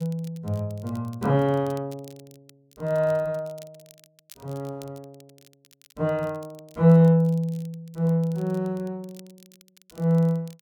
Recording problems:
crackling; vinyl, SNR 29 dB

